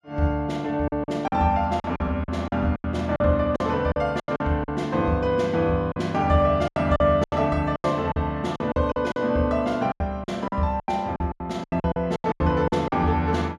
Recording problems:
lost packets; 14% of the sound replaced, filled with silence

